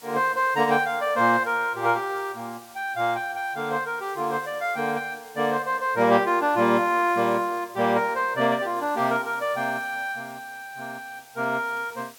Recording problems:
background hiss; slope +1 dB per octave, SNR 23 dB

